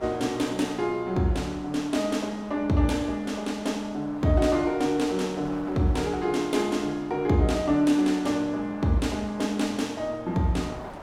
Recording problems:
wind on the microphone; below 1.1 kHz, SNR 18 dB

